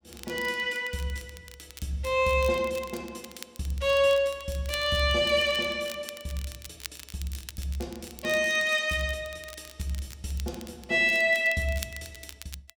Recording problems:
crackling; vinyl, SNR 18 dB

